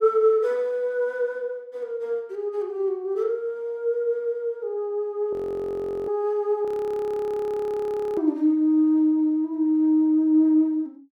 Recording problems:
frozen audio; at 5.5 s for 0.5 s and at 6.5 s for 1.5 s

